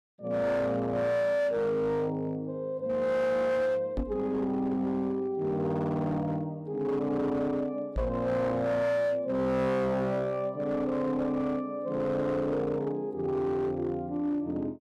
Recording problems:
distorted audio; hard clipping, signal-to-distortion ratio 11 dB
microphone bump; at 4 s and at 8 s; peak +1 dB vs average level

